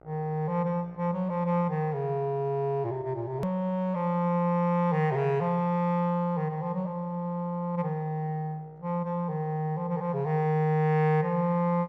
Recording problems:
mains hum; 60 Hz, harmonics up to 2 kHz, SNR 28 dB
click at an edit; at 3.5 s

